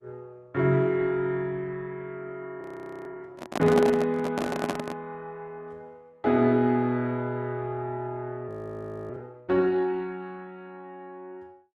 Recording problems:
lossy compression; Opus, log-spectral distance 2 dB, nothing above 13.1 kHz
audio freezing; at 2.5 s and at 8.5 s for 0.5 s
microphone handling noise; from 3.5 to 5 s; peak +3 dB vs average level

